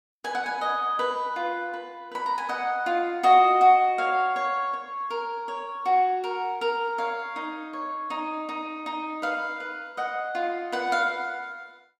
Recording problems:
none

